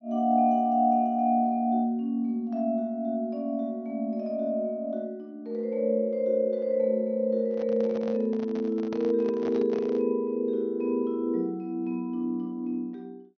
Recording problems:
treble missing; nothing above 6.3 kHz
microphone handling noise; from 7.5 to 10 s; peak -8 dB vs average level

